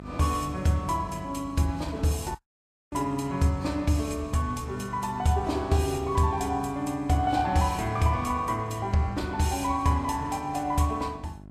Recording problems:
lossy codec; Vorbis, log-spectral distance 3 dB, nothing above 13.1 kHz
hum; 50 Hz, harmonics up to 1.1 kHz, SNR 18 dB
audio cutting out; at 2.5 s for 0.5 s

